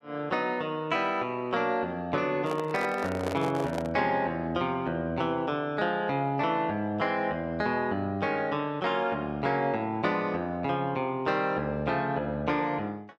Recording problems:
handling noise; from 2.5 to 4 s; peak 0 dB vs average level

